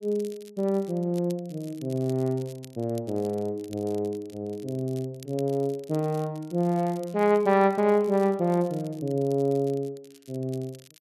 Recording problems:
crackle; vinyl, SNR 25 dB

